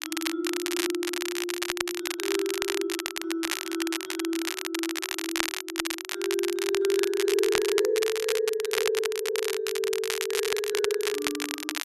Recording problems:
crackling; vinyl, SNR 2 dB

